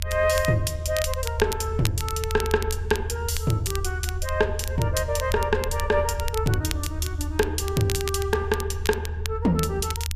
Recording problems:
low-frequency rumble; below 80 Hz, strongest tone 78 Hz, SNR 5 dB
crackling; vinyl, SNR 10 dB

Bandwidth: 14.5 kHz